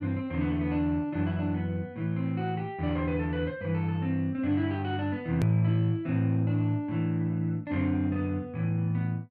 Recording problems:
edit click; at 5.5 s

